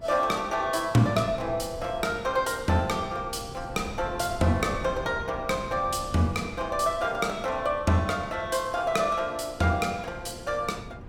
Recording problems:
mains hum; 60 Hz, harmonics up to 1.2 kHz, SNR 25 dB
wind noise; below 220 Hz, SNR 16 dB

